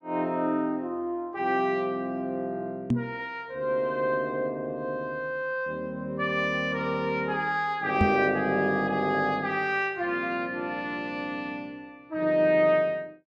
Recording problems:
microphone thump; at 3 s and at 8 s; peak +6 dB vs average level

